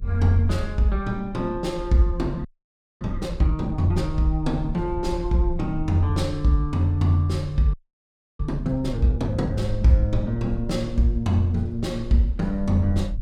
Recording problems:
low-frequency rumble; below 60 Hz, SNR 11 dB
audio freezing; at 2.5 s for 0.5 s and at 7.5 s for 0.5 s

